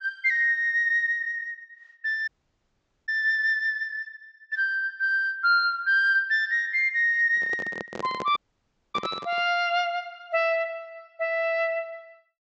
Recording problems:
low-pass filter; nothing above 8 kHz
audio cutting out; at 2.5 s for 1 s and at 8.5 s for 0.5 s
microphone handling noise; from 7.5 to 9.5 s; peak -6 dB vs average level

